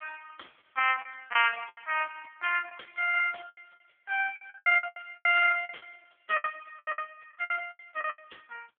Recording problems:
telephone audio; 540 Hz to 3.2 kHz, AMR-NB
lost packets; 15% of the sound replaced, filled with the last packet

